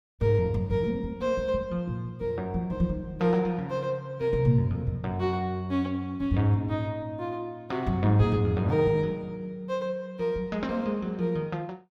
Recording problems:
none

